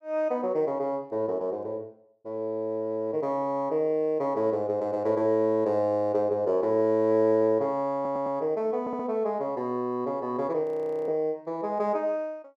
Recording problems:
stutter; at 8 s and at 9 s
audio freezing; at 11 s

